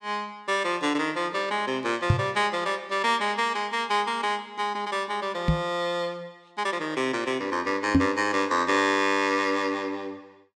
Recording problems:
knock on the microphone; at 2 s, at 5.5 s and at 8 s; peak +9 dB vs average level

